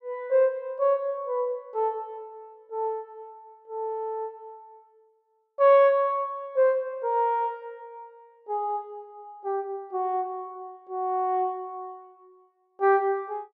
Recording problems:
none

